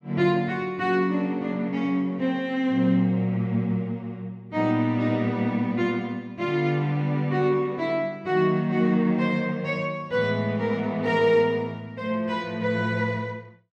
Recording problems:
none

